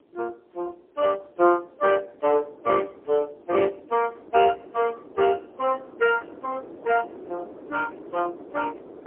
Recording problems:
phone line; 300 Hz to 2.8 kHz, AMR-NB, then MP3
wind on the microphone; below 530 Hz, SNR 19 dB

